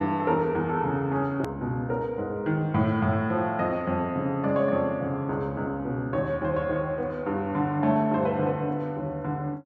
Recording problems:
click at an edit; at 1.5 s

